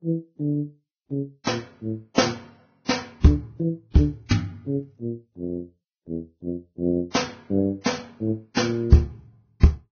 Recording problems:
lossy compression; Vorbis, log-spectral distance 2 dB, nothing above 6.3 kHz

